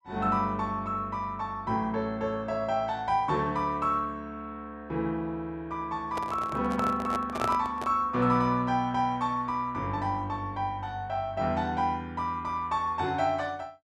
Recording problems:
microphone handling noise; from 6 to 8 s; peak +2 dB vs average level

